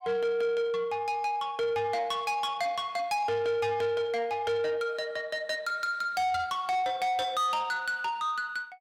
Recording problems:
distortion; soft clipping, signal-to-distortion ratio 11 dB

